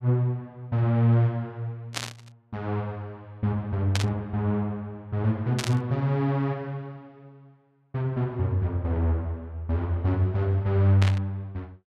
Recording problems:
static burst; 4 times, first at 2 s; peak +2 dB vs average level

